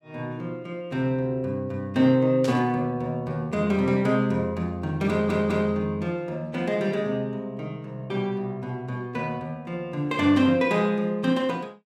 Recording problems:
static burst; at 2.5 s and at 10 s; peak -7 dB vs average level
stutter; at 5 s

